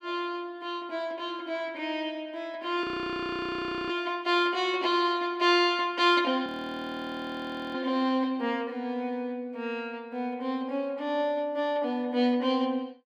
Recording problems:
frozen audio; at 3 s for 1 s and at 6.5 s for 1.5 s

